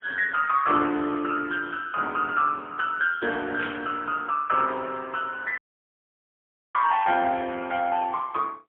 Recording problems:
telephone audio; 260 Hz to 3.4 kHz, AMR-NB, then MP3
burst of static; at 3.5 s; peak -4 dB vs average level
dropout; at 5.5 s for 1 s

